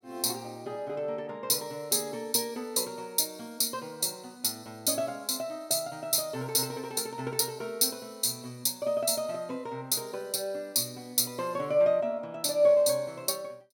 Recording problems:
none

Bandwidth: 17 kHz